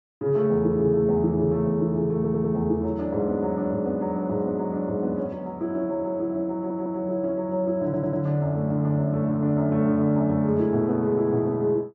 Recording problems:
treble cut off; nothing above 8 kHz
stutter; at 2 s, at 6.5 s and at 8 s

